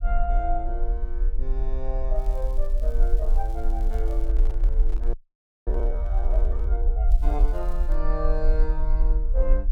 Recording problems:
rumble; below 42 Hz, strongest tone 26 Hz, SNR -8 dB
crackling; from 2 to 4.5 s and at 7 s; loose cable, SNR 22 dB
microphone handling noise; from 4 to 7 s; peak -7 dB vs average level
frozen audio; at 5 s for 0.5 s

